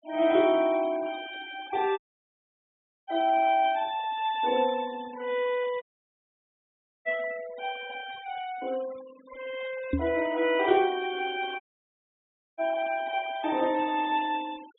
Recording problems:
low-pass filter; nothing above 4 kHz
noise reduction artefacts; signal-to-artefact ratio 21 dB
dropout; at 2 s for 1 s, at 6 s for 1 s and at 12 s for 1 s
knock on the microphone; at 10 s; peak +5 dB vs average level

